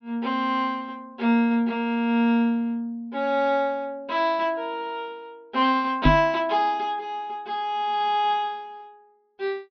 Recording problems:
treble cut off; nothing above 5.9 kHz
knock on the microphone; at 6 s; peak +9 dB vs average level

